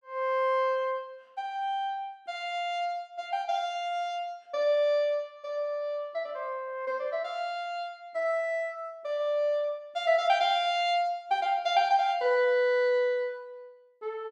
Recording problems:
none

